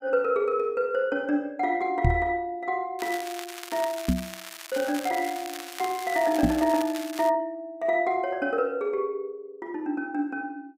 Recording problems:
microphone bump; at 2 s, at 4 s and at 6.5 s; peak +7 dB vs average level
crackle; from 3 to 7.5 s; loose cable, SNR 12 dB

